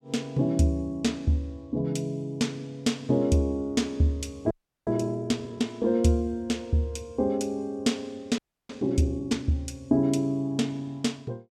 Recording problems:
frozen audio; at 4.5 s and at 8.5 s

